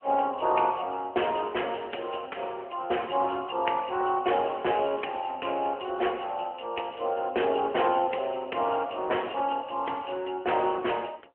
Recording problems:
telephone audio; 280 Hz to 3.1 kHz, AMR-NB

